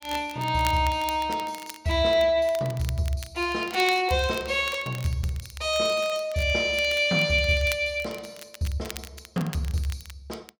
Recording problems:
crackling; vinyl, SNR 17 dB

